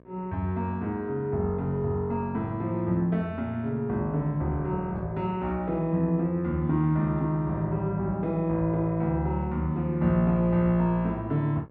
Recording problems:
electrical hum; 60 Hz, harmonics up to 1.7 kHz, SNR 27 dB

